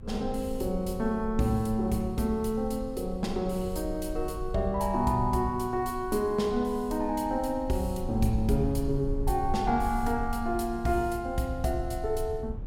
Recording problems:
rumble; below 68 Hz, strongest tone 22 Hz, SNR 10 dB

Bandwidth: 16.5 kHz